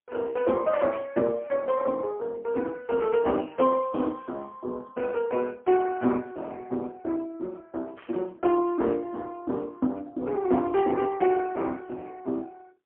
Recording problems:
phone line; 220 Hz to 2.8 kHz, AMR-NB, then MP3
burst of static; at 1 s and at 8 s; peak -15 dB vs average level

